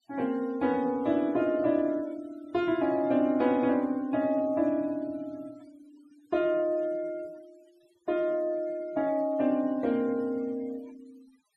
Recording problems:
denoising artefacts; signal-to-artefact ratio 27 dB

